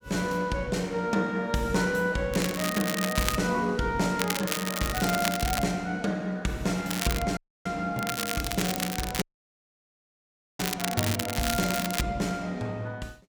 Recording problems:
crackle; 4 times, first at 2.5 s; loose cable, SNR 3 dB
dropout; at 7.5 s and at 9 s for 1.5 s

